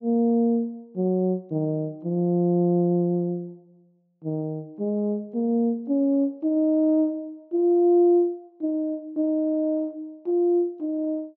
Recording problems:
low-pass filter; nothing above 7 kHz

